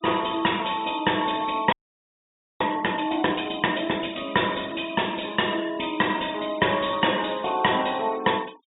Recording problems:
treble cut off; nothing above 4 kHz
denoising artefacts; signal-to-artefact ratio 22 dB
frozen audio; at 1.5 s for 1 s

